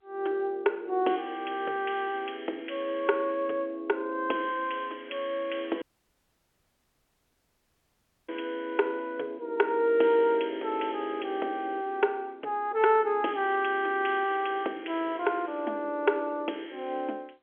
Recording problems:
phone line; 280 Hz to 3.4 kHz, G.711
dropout; at 6 s for 2.5 s

